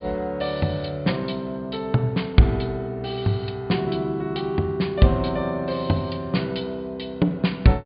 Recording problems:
treble missing; nothing above 4.8 kHz

